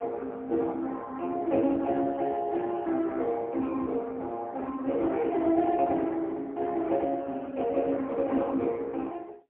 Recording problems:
telephone audio; 220 Hz to 3.4 kHz, AMR-NB, then MP3

